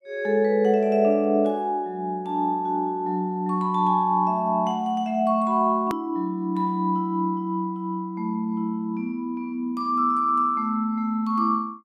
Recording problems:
hard cut with a click; at 6 s

